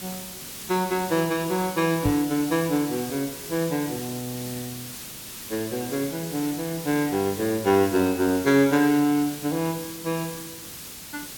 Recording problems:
background hiss; SNR 11 dB
microphone thump; at 2 s; peak +2 dB vs average level

